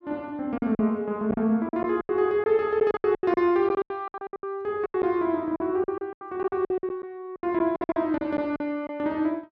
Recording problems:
lost packets; 17% of the sound replaced, filled with silence

